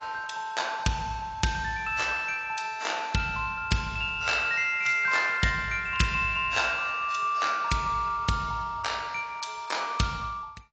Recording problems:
lossy codec; AAC, log-spectral distance 3 dB, nothing above 7.3 kHz

